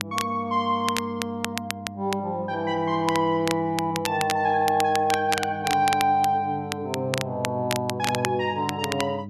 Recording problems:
hum; 50 Hz, harmonics up to 600 Hz, SNR 13 dB
crackle; vinyl, SNR 8 dB

